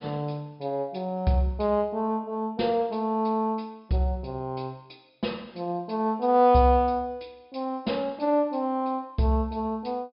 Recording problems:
treble missing; nothing above 5.5 kHz

